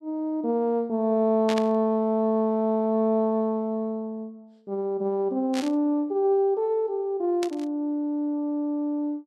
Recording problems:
burst of static; at 1.5 s, at 5.5 s and at 7.5 s; peak -4 dB vs average level

